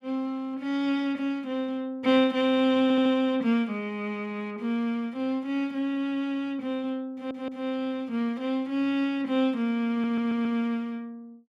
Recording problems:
audio stuttering; at 3 s, at 7 s and at 10 s

